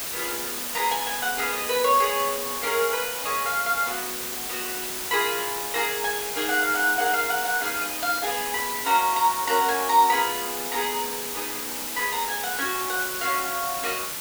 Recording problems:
background hiss; slope 0 dB per octave, SNR 3 dB

